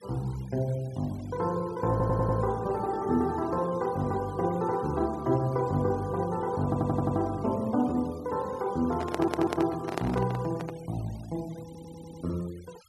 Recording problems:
noise reduction artefacts; signal-to-artefact ratio 23 dB
stutter; 4 times, first at 2 s
handling noise; from 9 to 11 s; peak +2 dB vs average level

